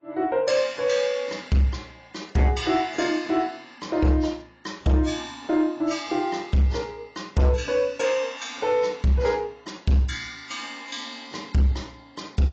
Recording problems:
lossy compression; AAC, log-spectral distance 4 dB, nothing above 7.3 kHz
distorted audio; soft clipping, signal-to-distortion ratio 12 dB

